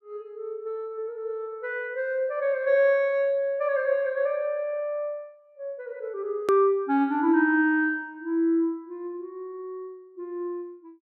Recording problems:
edit click; at 6.5 s

